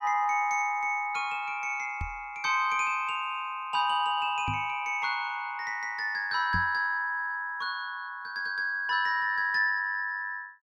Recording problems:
microphone bump; at 2 s, at 4.5 s and at 6.5 s; peak -2 dB vs average level

